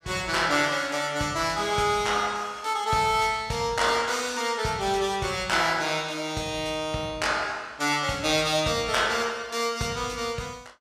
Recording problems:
none

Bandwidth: 15.5 kHz